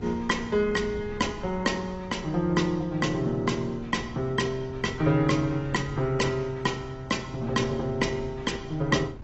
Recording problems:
lossy compression; AAC, log-spectral distance 3 dB, nothing above 7.8 kHz
wind noise; below 170 Hz, SNR 16 dB

